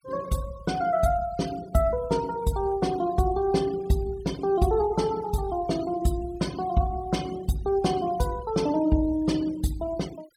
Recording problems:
noise reduction artefacts; signal-to-artefact ratio 19 dB

